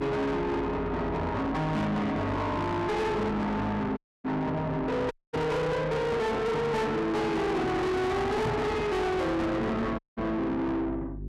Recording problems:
distorted audio; soft clipping, signal-to-distortion ratio 6 dB
hum; 50 Hz, harmonics up to 650 Hz, SNR 12 dB
dropout; at 4 s, at 5 s and at 10 s
microphone thump; at 8.5 s; peak +3 dB vs average level

